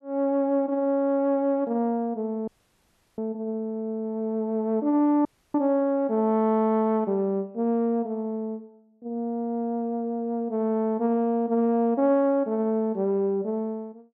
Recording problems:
dropout; at 2.5 s for 0.5 s and at 5.5 s

